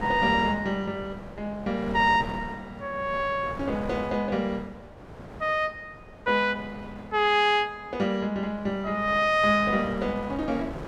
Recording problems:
wind on the microphone; below 780 Hz, SNR 14 dB

